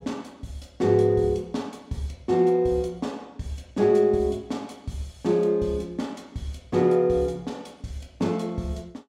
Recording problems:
none

